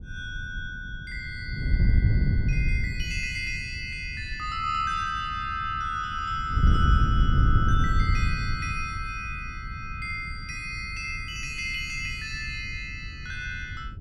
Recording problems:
wind noise; below 110 Hz, SNR -3 dB

